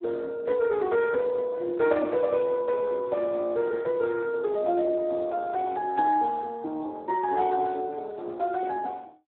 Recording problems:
phone line; 260 Hz to 2.3 kHz, Speex

